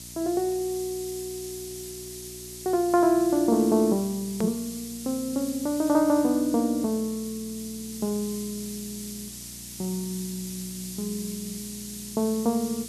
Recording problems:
electrical hum; 60 Hz, harmonics up to 720 Hz, SNR 22 dB
background hiss; slope +6 dB per octave, SNR 11 dB
click at an edit; at 4.5 s

